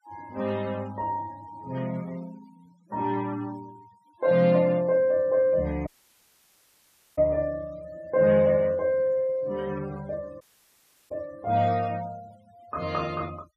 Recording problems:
denoising artefacts; signal-to-artefact ratio 26 dB
dropout; at 6 s for 1.5 s and at 10 s for 0.5 s

